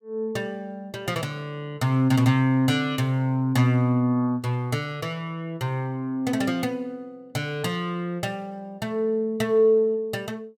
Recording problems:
none

